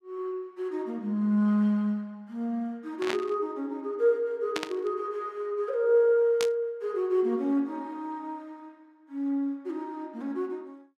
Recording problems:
burst of static; at 3 s, at 4.5 s and at 6.5 s; peak +1 dB vs average level

